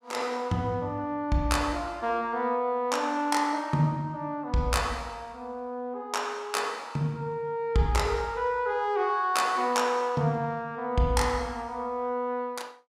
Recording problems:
none

